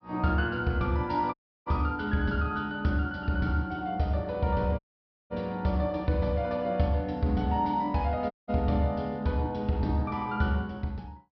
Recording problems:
treble cut off; nothing above 5.5 kHz
audio cutting out; at 1.5 s, at 5 s for 0.5 s and at 8.5 s

